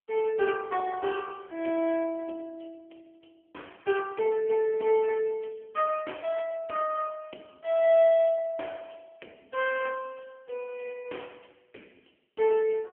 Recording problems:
phone line; 260 Hz to 3.3 kHz, AMR-NB

